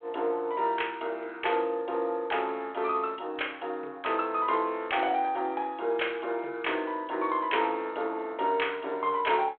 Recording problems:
phone line; 300 Hz to 3.4 kHz, G.726

